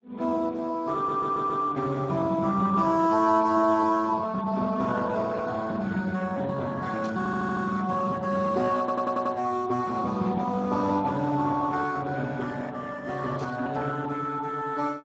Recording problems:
codec artefacts; Speex, log-spectral distance 3 dB
stutter; at 1 s, at 7 s and at 9 s
static burst; at 7 s and at 13 s; peak -15 dB vs average level

